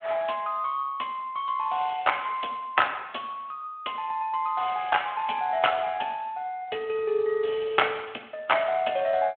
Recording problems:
phone line; 260 Hz to 3.3 kHz, Speex

